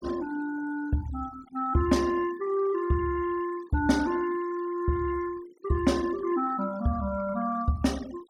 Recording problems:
denoising artefacts; signal-to-artefact ratio 20 dB

